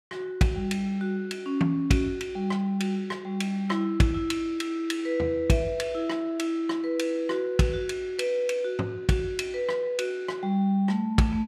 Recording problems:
none

